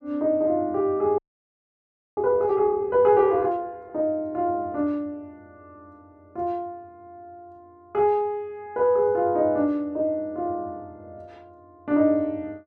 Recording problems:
audio freezing; at 1 s for 1 s

